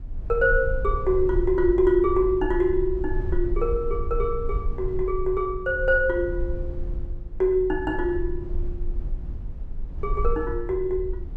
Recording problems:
rumble; below 56 Hz, SNR 8 dB

